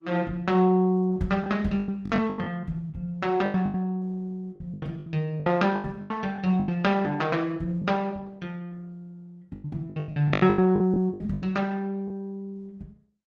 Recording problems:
lossy codec; Opus, log-spectral distance 2 dB, nothing above 13.1 kHz
lost packets; 12% of the sound replaced, filled with the last packet

